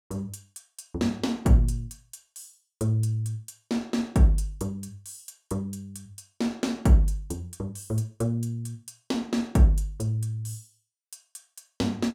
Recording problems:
none

